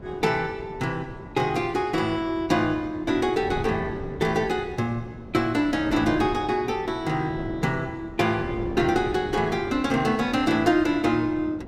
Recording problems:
wind noise; below 400 Hz, SNR 13 dB

